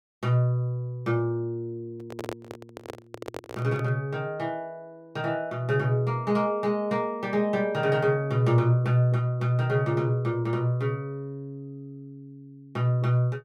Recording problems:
microphone handling noise; from 2 to 4 s; peak -4 dB vs average level

